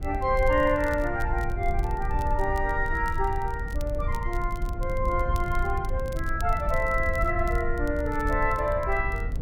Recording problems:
low-frequency rumble; below 70 Hz, SNR 4 dB
crackle; vinyl, SNR 24 dB

